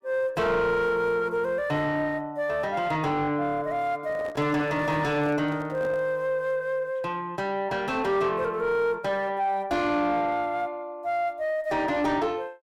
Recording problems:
distortion; soft clipping, signal-to-distortion ratio 10 dB
microphone handling noise; from 4 to 6 s; peak -5 dB vs average level

